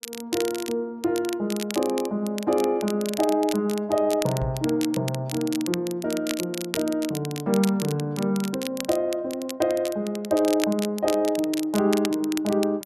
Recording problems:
crackle; vinyl, SNR 11 dB
microphone thump; at 4.5 s; peak -2 dB vs average level

